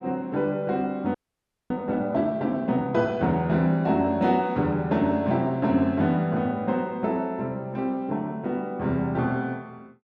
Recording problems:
frozen audio; at 1 s for 0.5 s

